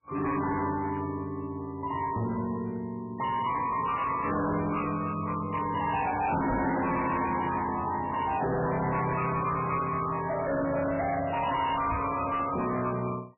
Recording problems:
lossy compression; MP3, log-spectral distance 5 dB, nothing above 2.7 kHz
distorted audio; hard clipping, signal-to-distortion ratio 7 dB
microphone thump; at 6.5 s and at 12 s; peak +3 dB vs average level

